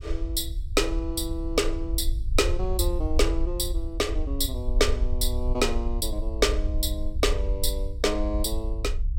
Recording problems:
low-frequency rumble; below 56 Hz, SNR 3 dB

